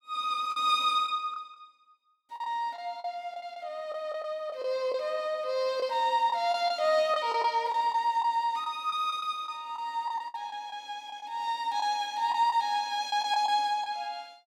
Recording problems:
lost packets; 8% of the sound replaced, filled with the last packet

